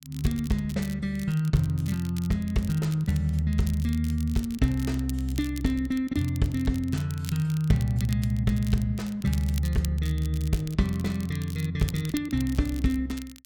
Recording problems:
crackling; vinyl, SNR 18 dB

